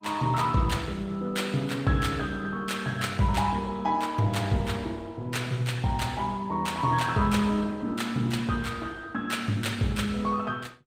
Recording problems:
codec artefacts; Opus, log-spectral distance 3 dB

